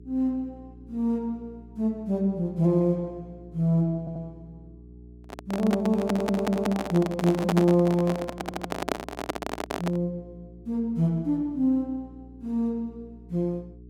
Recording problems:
hum; 60 Hz, harmonics up to 420 Hz, SNR 21 dB
stutter; at 4 s, at 6 s and at 8.5 s
handling noise; from 5 to 10 s; peak +3 dB vs average level

